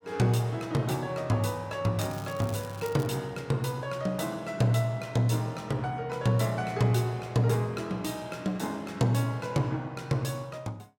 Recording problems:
crackling; from 2 to 3 s; loose cable, SNR 18 dB

